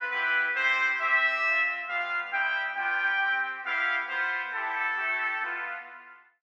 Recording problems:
none

